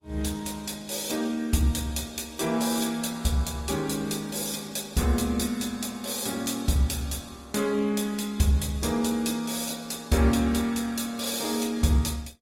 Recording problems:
lossy codec; Opus, log-spectral distance 5 dB, nothing above 16 kHz

